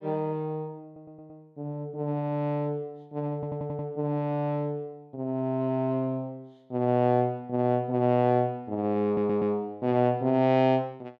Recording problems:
audio stuttering; at 1 s, at 3.5 s and at 9 s

